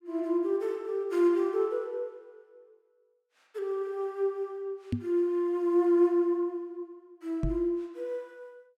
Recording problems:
microphone bump; at 5 s and at 7.5 s; peak +3 dB vs average level

